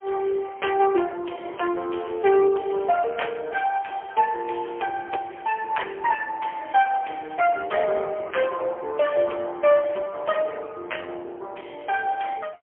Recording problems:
phone line; 320 Hz to 3.2 kHz, AMR-NB, then MP3

